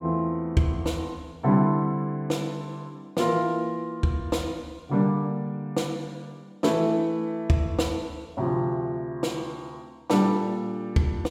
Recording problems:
none

